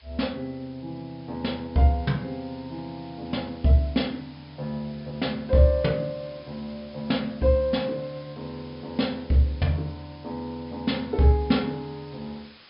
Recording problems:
treble cut off; nothing above 5.5 kHz
hiss; SNR 24 dB

